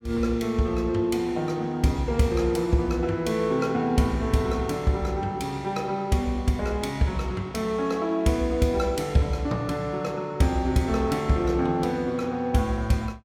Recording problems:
none

